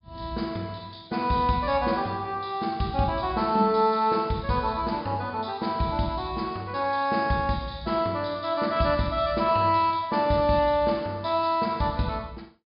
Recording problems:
treble missing; nothing above 5 kHz

